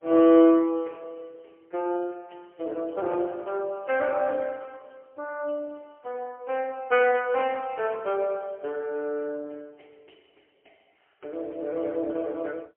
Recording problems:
telephone audio; 280 Hz to 3.1 kHz, AMR-NB, then MP3

